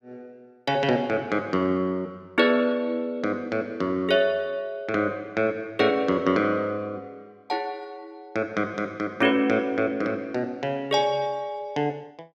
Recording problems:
none

